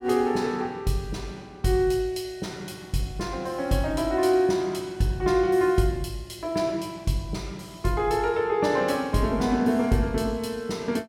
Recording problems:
none

